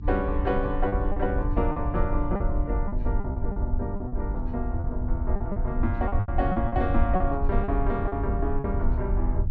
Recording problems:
treble missing; nothing above 7.5 kHz
electrical hum; 50 Hz, harmonics up to 1.2 kHz, SNR 22 dB
rumble; below 76 Hz, SNR -1 dB
lost packets; 9% of the sound replaced, filled with repeated pitch periods

